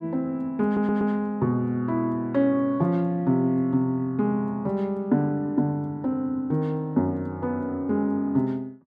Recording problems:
stutter; at 0.5 s

